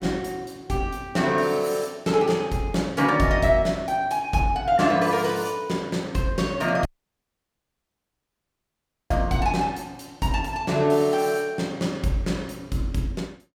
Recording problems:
audio cutting out; at 7 s for 2.5 s

